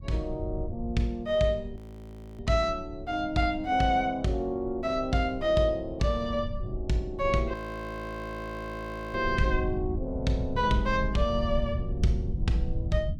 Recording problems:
rumble; below 100 Hz, SNR 8 dB
audio freezing; at 2 s for 0.5 s and at 7.5 s for 1.5 s

